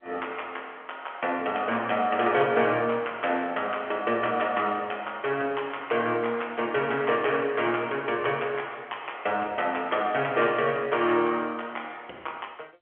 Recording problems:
phone line; 280 Hz to 3.2 kHz, G.711

